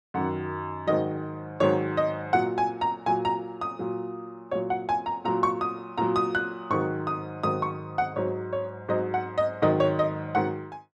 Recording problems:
none

